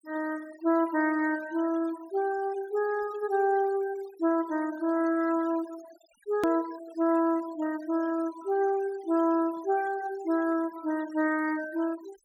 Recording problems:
denoising artefacts; signal-to-artefact ratio 20 dB
click at an edit; at 6.5 s

